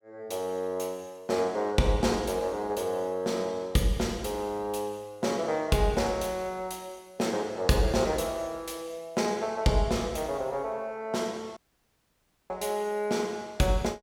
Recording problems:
dropout; at 12 s for 1 s

